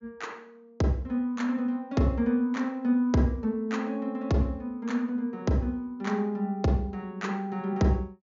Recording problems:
treble cut off; nothing above 7.1 kHz

